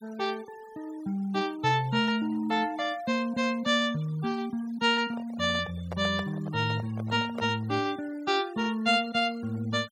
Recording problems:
noise reduction artefacts; signal-to-artefact ratio 22 dB
handling noise; from 5 to 7.5 s; peak -4 dB vs average level

